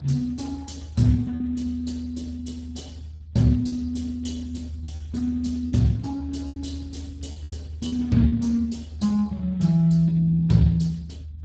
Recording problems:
codec artefacts; Speex, log-spectral distance 3 dB, nothing above 7.8 kHz
low-frequency rumble; below 80 Hz, strongest tone 76 Hz, SNR 14 dB
packet loss; 4% of the sound replaced, filled with repeated pitch periods

